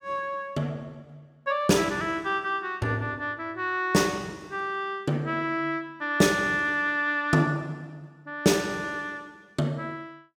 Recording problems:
none

